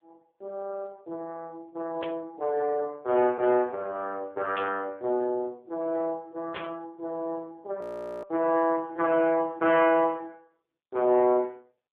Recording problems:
phone line; 260 Hz to 3.1 kHz, AMR-NB
burst of static; at 2 s, at 4.5 s and at 6.5 s; peak -6 dB vs average level
frozen audio; at 8 s

